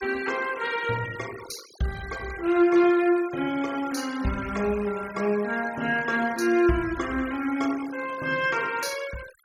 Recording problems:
noise reduction artefacts; signal-to-artefact ratio 18 dB

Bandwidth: 17 kHz